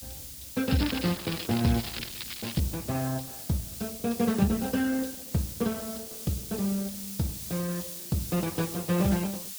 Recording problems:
lossy compression; MP2, then Opus, log-spectral distance 7 dB
hiss; slope +4 dB per octave, SNR 8 dB
crackle; from 0.5 to 2.5 s; loose cable, SNR 9 dB

